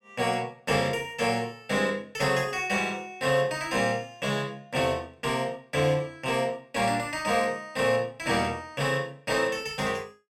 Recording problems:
none

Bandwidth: 16 kHz